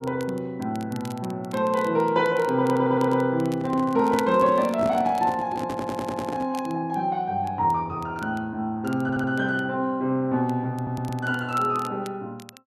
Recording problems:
crackle; vinyl, SNR 23 dB
stutter; 4 times, first at 2.5 s
handling noise; from 3.5 to 6.5 s; peak -3 dB vs average level

